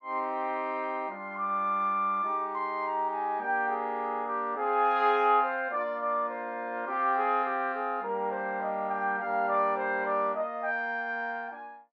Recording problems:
none

